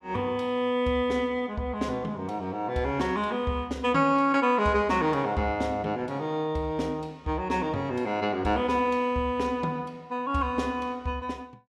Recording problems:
none

